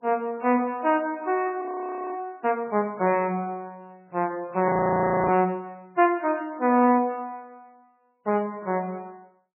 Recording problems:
lossy compression; MP3, log-spectral distance 2 dB, nothing above 2.4 kHz
audio freezing; at 1.5 s for 0.5 s and at 4.5 s for 0.5 s

